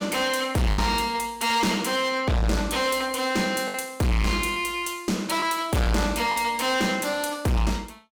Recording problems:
distortion; hard clipping, uneven, signal-to-distortion ratio 5 dB
lost packets; 3% of the sound replaced, filled with the last packet

